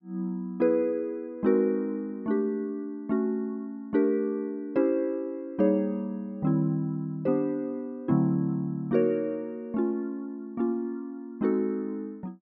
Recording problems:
none

